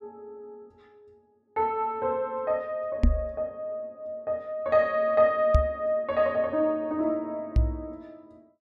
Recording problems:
microphone bump; at 3 s, at 5.5 s and at 7.5 s; peak +9 dB vs average level

